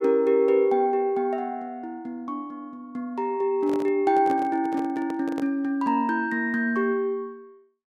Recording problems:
microphone handling noise; from 3.5 to 5.5 s; peak -7 dB vs average level

